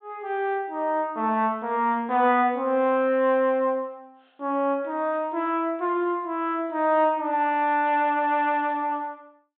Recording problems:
treble cut off; nothing above 4 kHz

